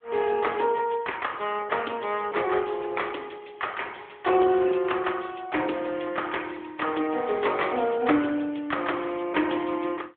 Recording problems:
phone line; 240 Hz to 3.5 kHz, AMR-NB

